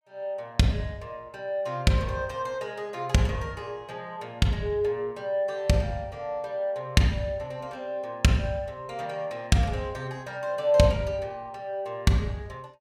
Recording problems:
none

